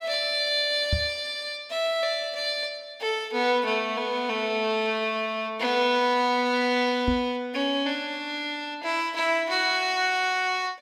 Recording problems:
knock on the microphone; at 1 s and at 7 s; peak +3 dB vs average level

